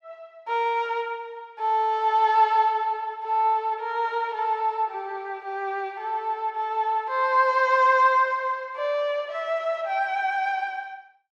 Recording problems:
none

